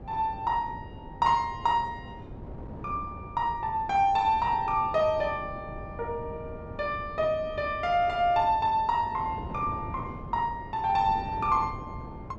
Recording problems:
wind on the microphone; below 340 Hz, SNR 14 dB

